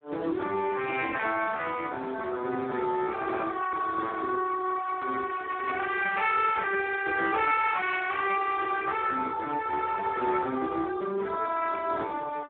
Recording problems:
telephone audio; 220 Hz to 2.2 kHz, Speex

